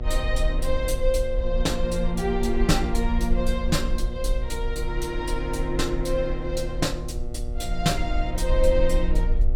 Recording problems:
mains hum; 60 Hz, harmonics up to 1.3 kHz, SNR 13 dB
rumble; below 48 Hz, SNR 3 dB

